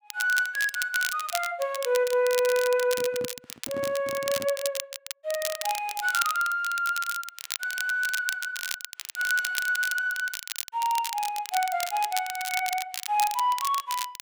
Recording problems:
crackle; vinyl, SNR 7 dB
microphone handling noise; from 3 to 4.5 s; peak -7 dB vs average level

